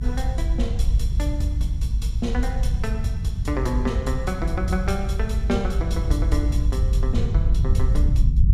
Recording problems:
low-frequency rumble; below 76 Hz, SNR -5 dB

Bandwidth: 15 kHz